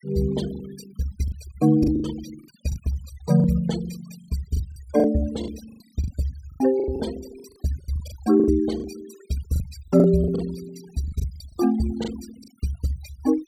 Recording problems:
denoising artefacts; signal-to-artefact ratio 18 dB
lost packets; 12% of the sound replaced, filled with the last packet

